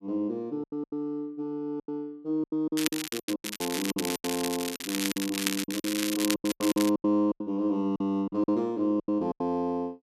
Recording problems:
packet loss; 15% of the sound replaced, filled with silence
crackling; from 3 to 7 s; loose cable, SNR 3 dB

